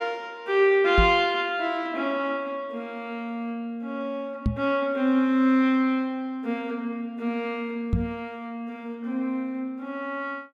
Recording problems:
microphone bump; at 1 s, at 4.5 s and at 8 s; peak +7 dB vs average level

